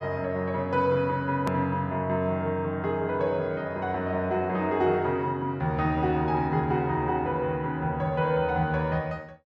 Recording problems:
click at an edit; at 1.5 s

